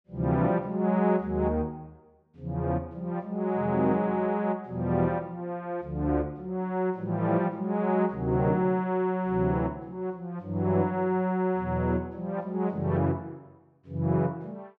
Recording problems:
none

